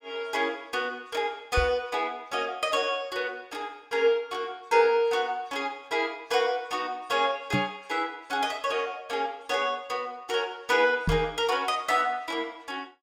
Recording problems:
knock on the microphone; at 1.5 s, at 7.5 s and at 11 s; peak +4 dB vs average level

